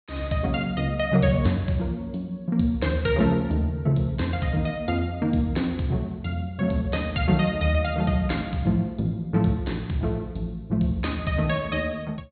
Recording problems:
treble missing; nothing above 4.3 kHz

